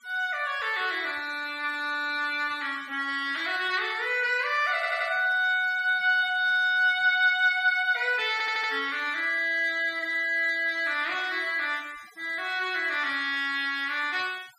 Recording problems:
denoising artefacts; signal-to-artefact ratio 23 dB
audio stuttering; at 5 s and at 8.5 s

